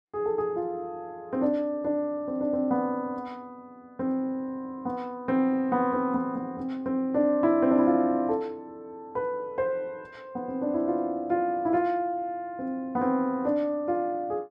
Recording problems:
none

